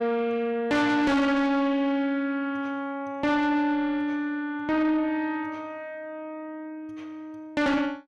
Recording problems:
distortion; soft clipping, signal-to-distortion ratio 7 dB

